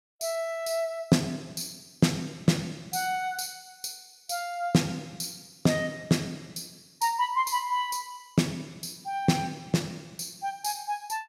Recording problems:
none

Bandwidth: 16 kHz